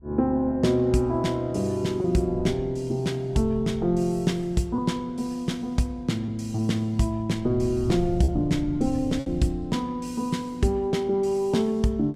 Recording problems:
wind noise; below 110 Hz, SNR 13 dB
lost packets; 1.5% of the sound replaced, filled with repeated pitch periods

